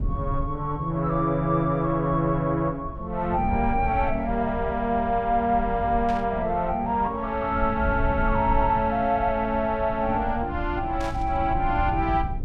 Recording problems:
low-frequency rumble; below 100 Hz, SNR 9 dB
burst of static; at 6 s and at 11 s; peak -11 dB vs average level

